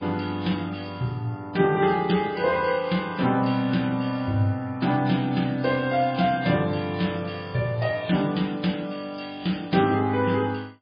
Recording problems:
codec artefacts; MP3, log-spectral distance 4 dB, nothing above 4.6 kHz

